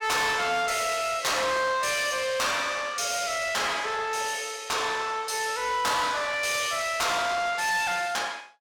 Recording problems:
distorted audio; soft clipping, signal-to-distortion ratio 8 dB

